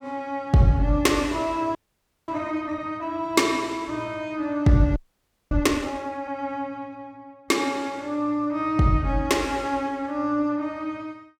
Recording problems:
audio freezing; at 2 s for 0.5 s and at 5 s for 0.5 s

